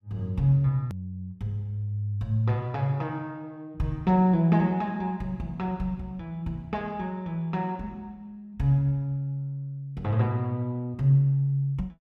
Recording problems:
edit click; at 1 s

